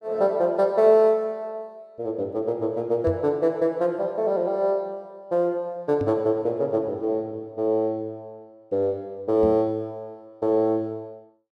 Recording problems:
microphone bump; at 3 s, at 6 s and at 9.5 s; peak -2 dB vs average level

